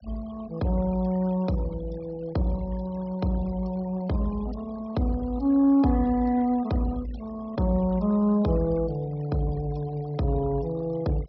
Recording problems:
treble missing; nothing above 5.5 kHz
noise reduction artefacts; signal-to-artefact ratio 23 dB

